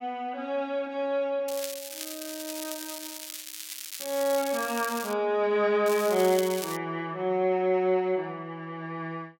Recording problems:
crackle; from 1.5 to 5 s and at 6 s; loose cable, SNR 9 dB

